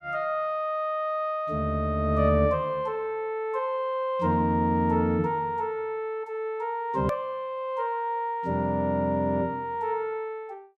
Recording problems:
edit click; at 7 s

